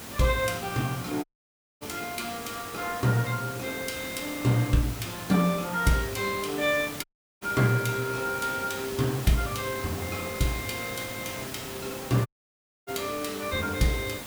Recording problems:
electrical hum; 50 Hz, harmonics up to 1.4 kHz, SNR 25 dB
background hiss; slope -3 dB per octave, SNR 9 dB
dropout; at 1 s for 0.5 s, at 7 s and at 12 s for 0.5 s

